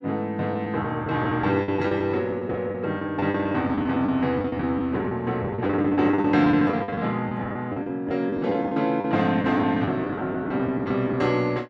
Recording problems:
packet loss; 13% of the sound replaced, filled with the last packet

